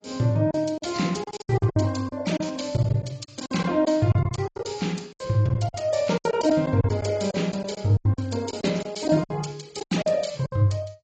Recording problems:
lossy compression; AAC, log-spectral distance 5 dB, nothing above 7.6 kHz
packet loss; 15% of the sound replaced, filled with silence

